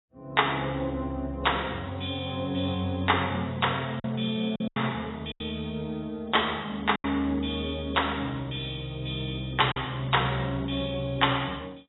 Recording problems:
lossy codec; AAC, log-spectral distance 6 dB, nothing above 3.8 kHz
lost packets; 3% of the sound replaced, filled with silence

